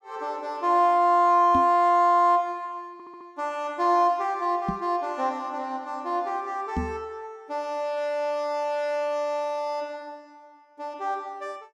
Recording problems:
microphone bump; at 1.5 s, at 4.5 s and at 7 s; peak 0 dB vs average level
audio stuttering; at 3 s

